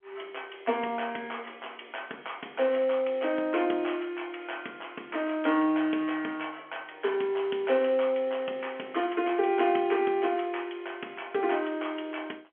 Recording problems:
telephone audio; 240 Hz to 3.3 kHz, G.711

